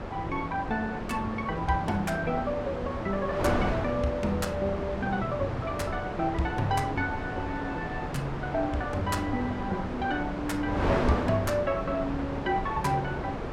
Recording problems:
wind on the microphone; below 920 Hz, SNR 3 dB

